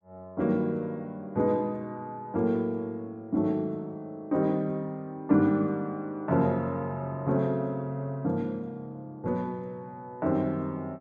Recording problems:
none

